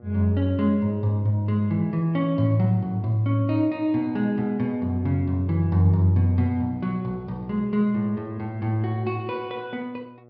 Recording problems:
treble cut off; nothing above 5.5 kHz
mains hum; 60 Hz, harmonics up to 1.3 kHz, SNR 26 dB

